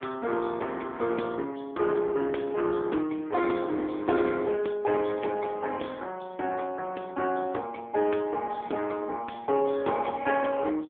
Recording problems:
phone line; 260 Hz to 3.4 kHz, AMR-NB

